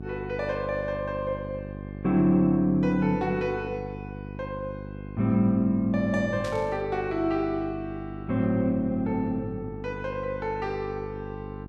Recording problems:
hum; 50 Hz, harmonics up to 800 Hz, SNR 11 dB
static burst; at 6.5 s; peak -9 dB vs average level

